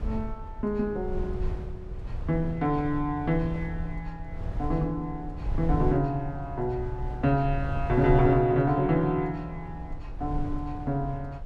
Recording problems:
low-frequency rumble; below 88 Hz, SNR 9 dB

